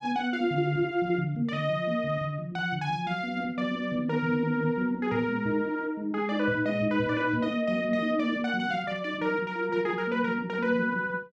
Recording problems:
none

